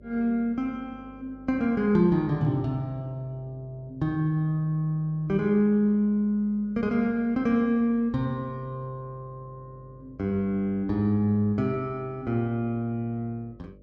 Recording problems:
electrical hum; 50 Hz, harmonics up to 600 Hz, SNR 27 dB

